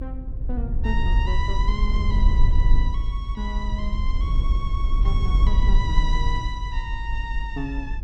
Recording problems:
hum; 50 Hz, harmonics up to 350 Hz, SNR 15 dB
low-frequency rumble; below 54 Hz, SNR -8 dB

